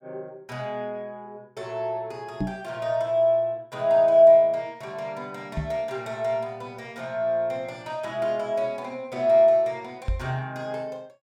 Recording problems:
microphone bump; at 2.5 s, at 5.5 s and at 10 s; peak 0 dB vs average level

